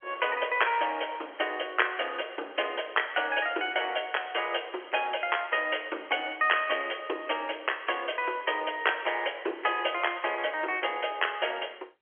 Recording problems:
phone line; 300 Hz to 3.3 kHz, G.711

